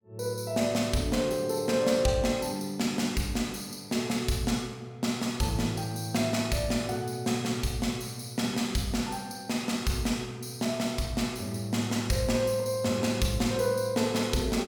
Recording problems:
none

